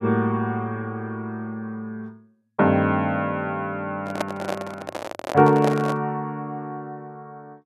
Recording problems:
microphone handling noise; from 4 to 6 s; peak +3 dB vs average level

